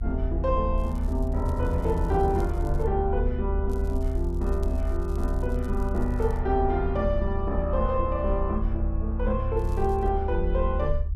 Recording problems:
rumble; below 74 Hz, strongest tone 40 Hz, SNR 1 dB
crackling; from 1 to 3 s, from 3.5 to 6.5 s and at 9.5 s; loose cable, SNR 27 dB

